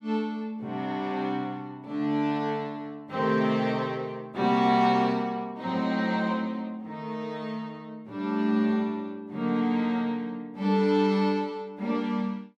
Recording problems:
none

